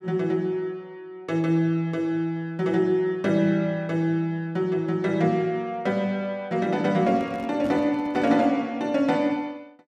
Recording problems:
handling noise; from 7 to 8.5 s; peak -7 dB vs average level

